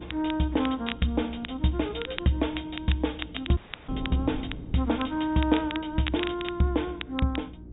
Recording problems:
treble missing; nothing above 4 kHz
hum; 60 Hz, harmonics up to 360 Hz, SNR 19 dB
wind noise; below 250 Hz, SNR 16 dB
crackling; vinyl, SNR 11 dB
audio cutting out; at 3.5 s

